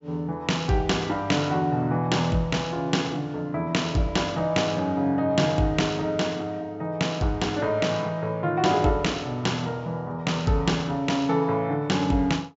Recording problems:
treble cut off; nothing above 8 kHz

